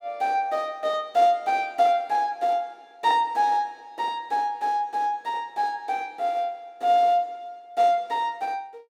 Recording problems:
none

